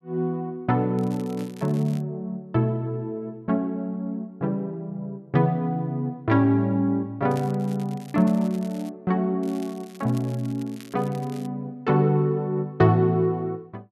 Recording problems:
crackling; from 1 to 2 s, from 7.5 to 9 s and from 9.5 to 11 s; loose cable, SNR 24 dB

